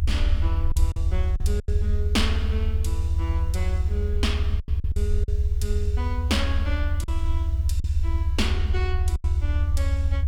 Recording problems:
hiss; slope -5 dB per octave, SNR 28 dB
rumble; below 80 Hz, SNR -8 dB
packet loss; 6% of the sound replaced, filled with silence

